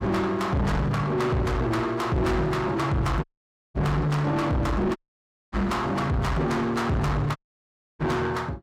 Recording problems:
distorted audio; soft clipping, signal-to-distortion ratio 8 dB
audio cutting out; at 3 s for 0.5 s, at 5 s for 0.5 s and at 7.5 s for 0.5 s

